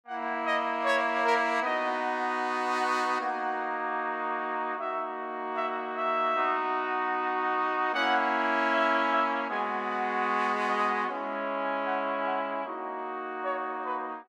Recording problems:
none

